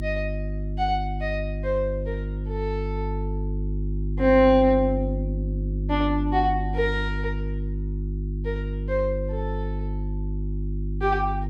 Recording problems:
hum; 50 Hz, harmonics up to 350 Hz, SNR 4 dB

